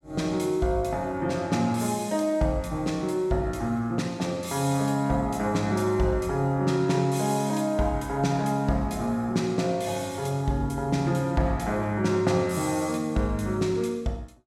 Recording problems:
none

